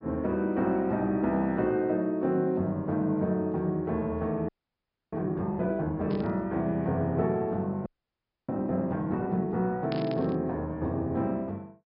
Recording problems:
low-pass filter; nothing above 5.5 kHz
audio freezing; at 4.5 s for 0.5 s and at 8 s for 0.5 s
burst of static; at 6 s and at 10 s; peak -7 dB vs average level

